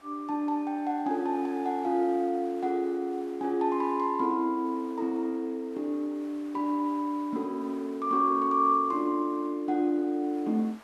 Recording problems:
hiss; SNR 26 dB

